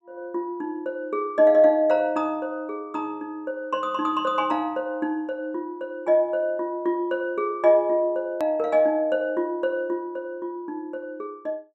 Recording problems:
click at an edit; at 8.5 s

